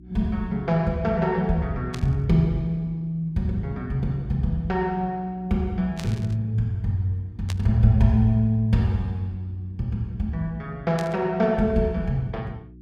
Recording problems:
mains hum; 60 Hz, harmonics up to 360 Hz, SNR 23 dB
burst of static; 4 times, first at 2 s; peak -6 dB vs average level

